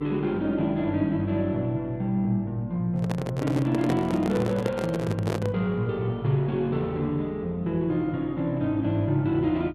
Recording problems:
electrical hum; 50 Hz, harmonics up to 400 Hz, SNR 22 dB
handling noise; from 3 to 5.5 s; peak +1 dB vs average level

